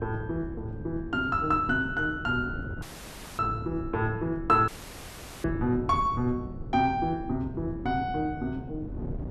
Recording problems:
wind on the microphone; below 230 Hz, SNR 11 dB
audio cutting out; at 3 s for 0.5 s and at 4.5 s for 1 s

